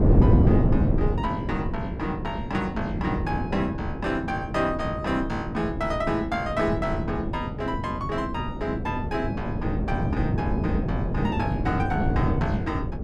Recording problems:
wind on the microphone; below 260 Hz, SNR -2 dB

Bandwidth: 14 kHz